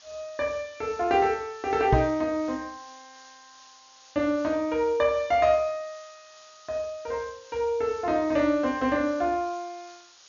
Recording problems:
low-pass filter; nothing above 6.9 kHz
hiss; SNR 24 dB
knock on the microphone; at 2 s; peak +6 dB vs average level

